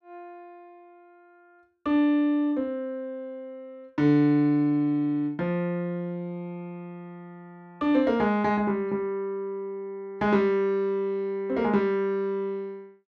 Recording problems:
none

